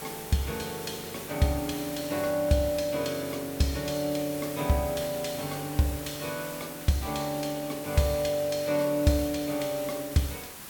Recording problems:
hiss; slope -2 dB per octave, SNR 10 dB

